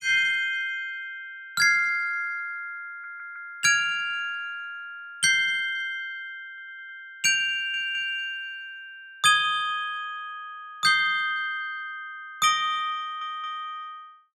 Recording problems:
stutter; 4 times, first at 3 s

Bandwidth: 16 kHz